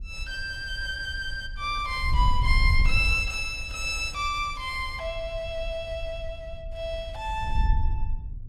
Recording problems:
wind noise; below 70 Hz, SNR 3 dB

